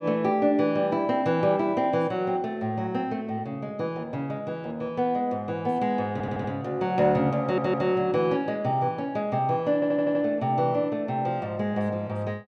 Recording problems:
audio stuttering; at 6 s, at 7.5 s and at 9.5 s

